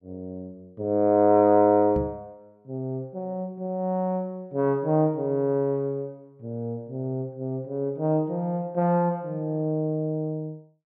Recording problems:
microphone thump; at 2 s; peak -2 dB vs average level

